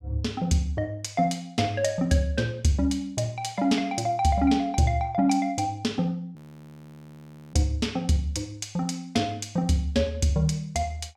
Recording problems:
frozen audio; at 6.5 s for 1 s

